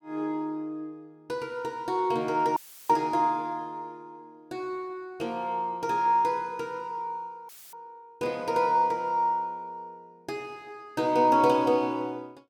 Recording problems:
audio cutting out; at 2.5 s and at 7.5 s; filled with static

